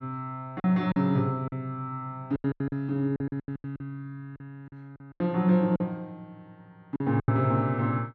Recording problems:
lost packets; 12% of the sound replaced, filled with silence

